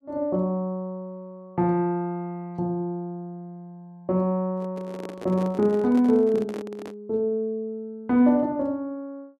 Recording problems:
handling noise; from 4.5 to 7 s; peak -7 dB vs average level

